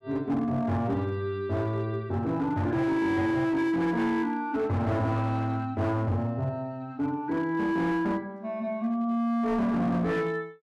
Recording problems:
distortion; hard clipping, signal-to-distortion ratio 10 dB

